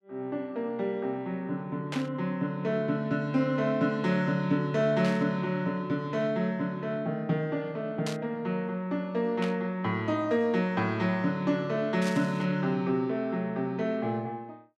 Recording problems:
static burst; 5 times, first at 2 s; peak -3 dB vs average level

